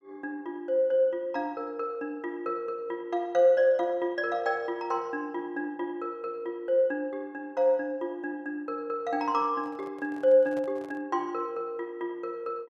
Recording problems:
handling noise; from 9.5 to 11 s; peak -11 dB vs average level

